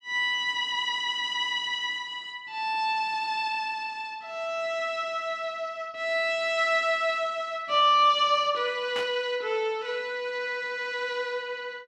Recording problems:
static burst; at 9 s; peak -5 dB vs average level

